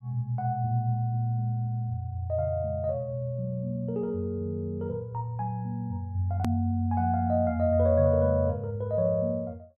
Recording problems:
edit click; at 6.5 s

